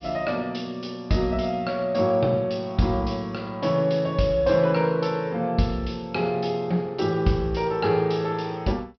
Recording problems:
treble cut off; nothing above 5.5 kHz

